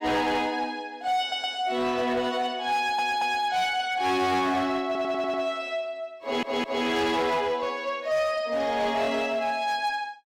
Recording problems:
distortion; hard clipping, signal-to-distortion ratio 11 dB
audio stuttering; 4 times, first at 1 s

